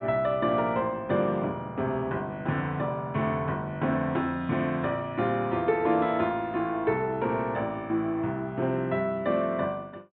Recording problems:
treble cut off; nothing above 4 kHz

